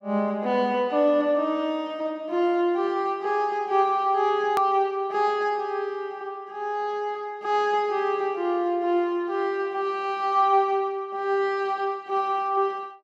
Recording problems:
click at an edit; at 4.5 s

